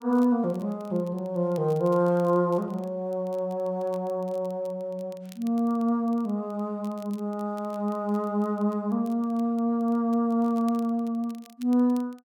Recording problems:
crackle; vinyl, SNR 30 dB

